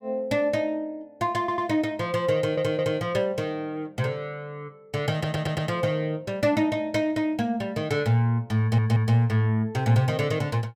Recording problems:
stutter; 4 times, first at 1.5 s

